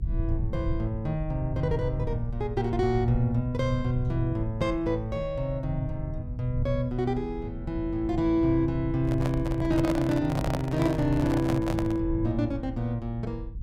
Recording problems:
rumble; below 110 Hz, SNR 8 dB
microphone handling noise; from 9 to 12 s; peak +2 dB vs average level

